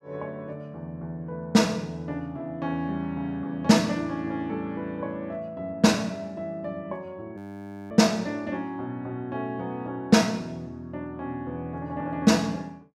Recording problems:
frozen audio; at 7.5 s for 0.5 s

